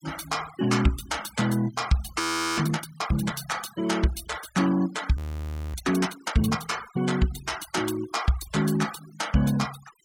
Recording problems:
denoising artefacts; signal-to-artefact ratio 16 dB
audio freezing; at 2 s and at 5 s for 0.5 s

